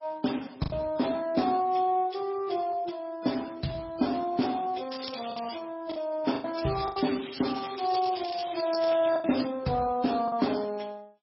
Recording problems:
lossy compression; Speex, then MP3, log-spectral distance 9 dB, nothing above 5.5 kHz
packet loss; 4% of the sound replaced, filled with the last packet
crackling; at 5 s and from 6.5 to 9.5 s; loose cable, SNR 9 dB

